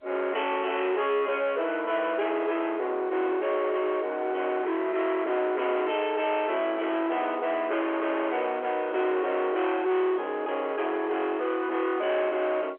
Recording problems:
telephone audio; 340 Hz to 3.3 kHz, G.711
distorted audio; soft clipping, signal-to-distortion ratio 8 dB

